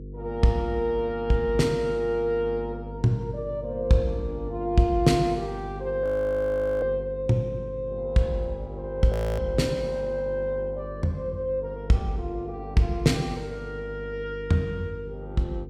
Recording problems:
electrical hum; 50 Hz, harmonics up to 500 Hz, SNR 12 dB
frozen audio; at 6 s for 1 s and at 9 s

